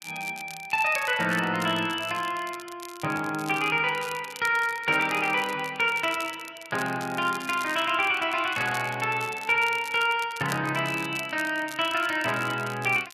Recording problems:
crackle; vinyl, SNR 17 dB

